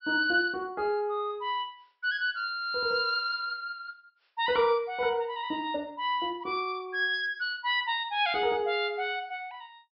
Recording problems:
treble missing; nothing above 5.5 kHz

